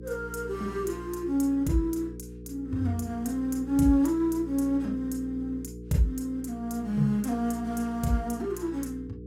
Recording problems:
hum; 60 Hz, harmonics up to 480 Hz, SNR 13 dB

